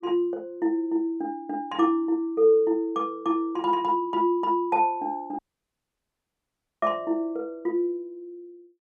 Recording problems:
audio cutting out; at 5.5 s for 1.5 s

